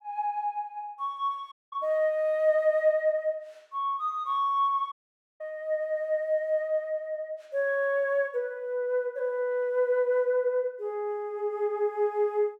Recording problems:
audio cutting out; at 1.5 s and at 5 s

